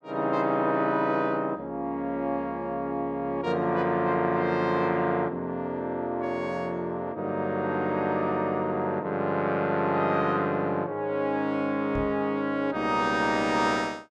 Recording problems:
knock on the microphone; at 12 s; peak -5 dB vs average level

